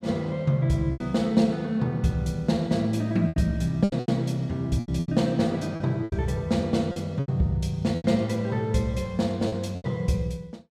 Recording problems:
lost packets; 9% of the sound replaced, filled with repeated pitch periods

